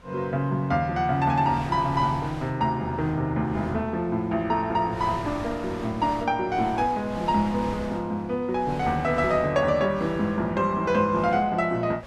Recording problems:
wind on the microphone; below 1.4 kHz, SNR 16 dB

